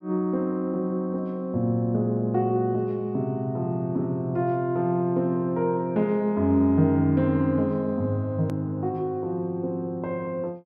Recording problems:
click at an edit; at 8.5 s

